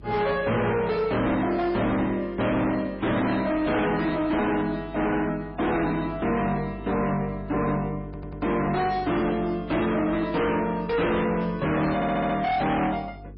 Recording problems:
codec artefacts; MP3, log-spectral distance 3 dB, nothing above 4.9 kHz
distorted audio; hard clipping, signal-to-distortion ratio 7 dB
hum; 50 Hz, harmonics up to 450 Hz, SNR 18 dB
audio stuttering; at 8 s and at 12 s

